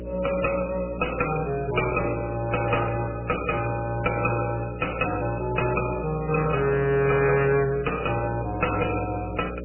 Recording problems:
codec artefacts; MP3, log-spectral distance 7 dB, nothing above 2.6 kHz
distorted audio; hard clipping, uneven, signal-to-distortion ratio 9 dB
electrical hum; 60 Hz, harmonics up to 600 Hz, SNR 10 dB

